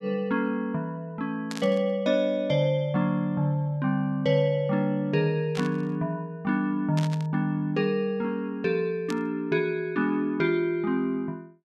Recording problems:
burst of static; 4 times, first at 1.5 s; peak -6 dB vs average level

